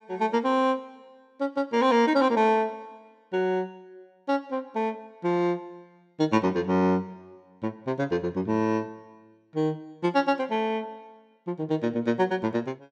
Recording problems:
none

